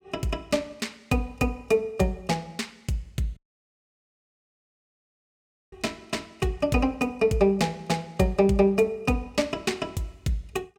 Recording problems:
audio cutting out; at 3.5 s for 2.5 s

